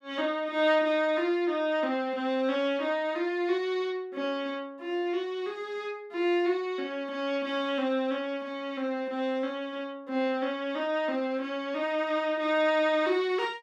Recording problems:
none

